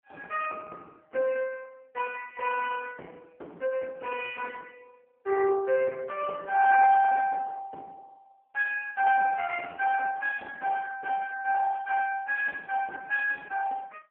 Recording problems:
phone line; 300 Hz to 2.3 kHz, AMR-NB

